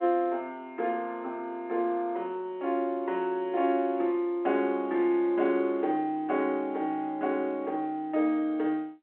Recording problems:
phone line; 240 Hz to 3.4 kHz, G.711

